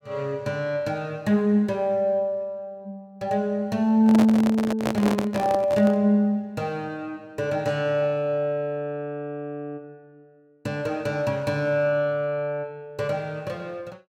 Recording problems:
handling noise; from 4 to 6 s; peak +1 dB vs average level

